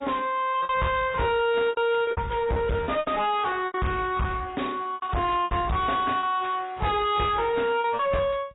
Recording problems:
codec artefacts; AAC, log-spectral distance 3 dB, nothing above 3.7 kHz
distorted audio; soft clipping, signal-to-distortion ratio 6 dB
packet loss; 11% of the sound replaced, filled with repeated pitch periods

